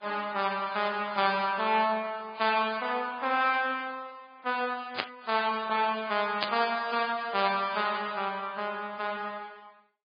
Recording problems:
lossy compression; Vorbis, then MP3, log-spectral distance 4 dB, nothing above 4.4 kHz
burst of static; at 5 s and at 6.5 s; peak +4 dB vs average level

